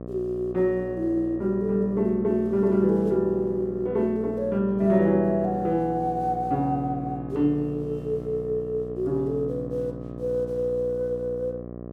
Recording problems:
electrical hum; 60 Hz, harmonics up to 1.3 kHz, SNR 11 dB

